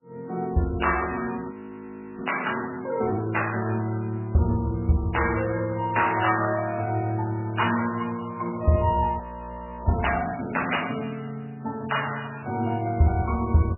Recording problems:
codec artefacts; MP3, log-spectral distance 6 dB, nothing above 2.9 kHz
frozen audio; at 1.5 s for 0.5 s and at 9 s for 0.5 s

